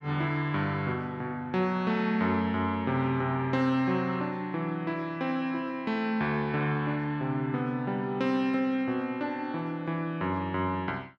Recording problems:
none

